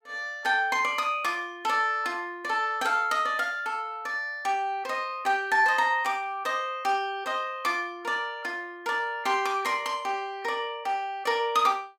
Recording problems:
none

